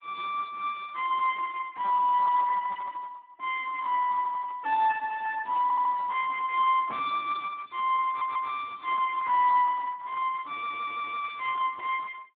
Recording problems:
phone line; 370 Hz to 2.6 kHz, Speex
burst of static; at 2 s; peak -22 dB vs average level
audio stuttering; at 5.5 s, at 8 s and at 11 s

